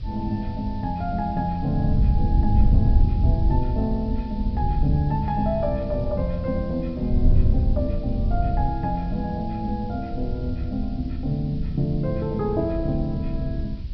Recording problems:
treble cut off; nothing above 5.5 kHz
background hiss; SNR 27 dB
wind noise; below 92 Hz, SNR 0 dB

